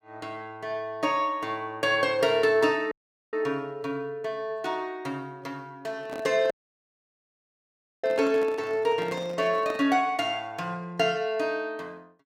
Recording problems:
audio cutting out; at 3 s and at 6.5 s for 1.5 s
handling noise; from 6 to 10 s; peak -6 dB vs average level

